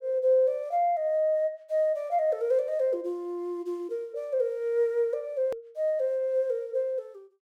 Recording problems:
click at an edit; at 5.5 s

